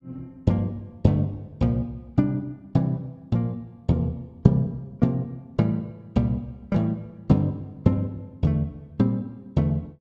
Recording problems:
none

